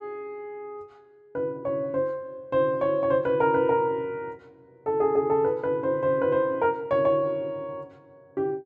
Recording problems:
none

